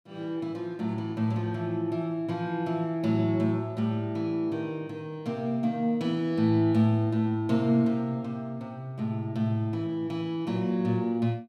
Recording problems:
none

